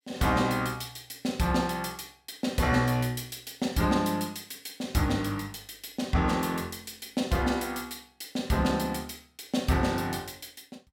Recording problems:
none

